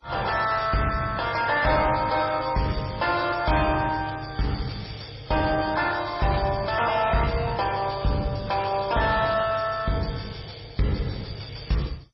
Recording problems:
lossy codec; MP3, then MP2, log-spectral distance 8 dB, nothing above 5.3 kHz
distorted audio; soft clipping, signal-to-distortion ratio 12 dB

